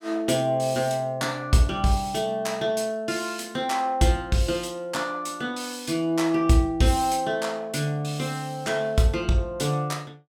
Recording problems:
none

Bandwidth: 17 kHz